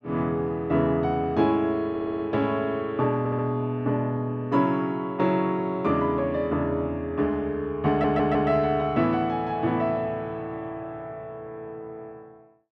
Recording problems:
stutter; at 2 s, at 3 s and at 8 s

